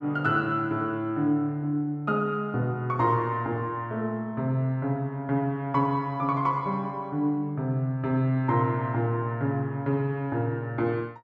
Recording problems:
none

